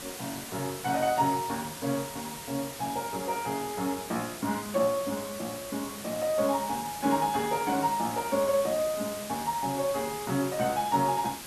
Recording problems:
hiss; slope -2 dB per octave, SNR 9 dB

